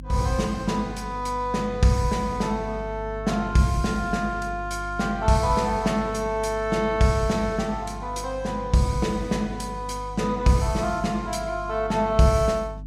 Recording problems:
hum; 50 Hz, harmonics up to 300 Hz, SNR 14 dB

